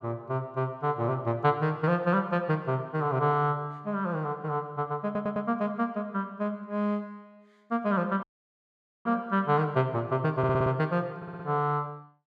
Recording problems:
audio stuttering; at 5 s, at 10 s and at 11 s
dropout; at 8 s for 1 s

